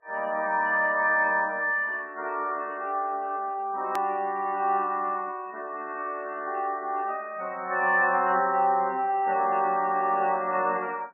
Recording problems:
lossy compression; AAC, then MP3, log-spectral distance 2 dB, nothing above 15.1 kHz
hard cut with a click; at 4 s

